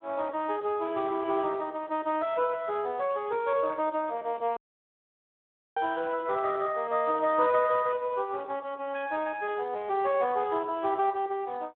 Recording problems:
phone line; 280 Hz to 3.5 kHz, Speex
audio cutting out; at 4.5 s for 1 s

